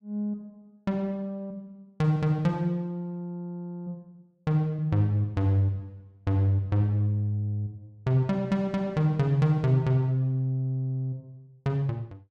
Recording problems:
none

